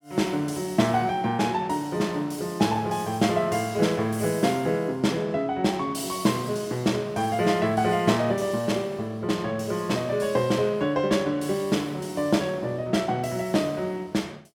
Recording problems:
none

